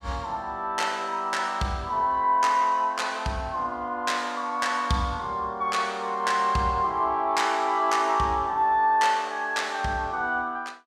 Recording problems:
none

